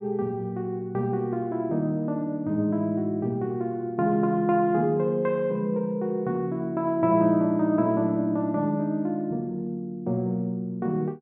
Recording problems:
treble cut off; nothing above 4 kHz

